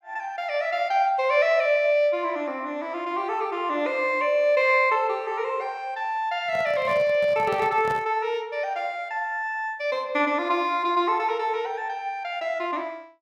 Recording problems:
handling noise; from 6.5 to 8 s; peak -6 dB vs average level

